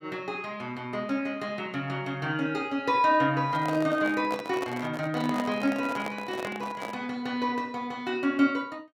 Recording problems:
microphone handling noise; from 3.5 to 7 s; peak -1 dB vs average level

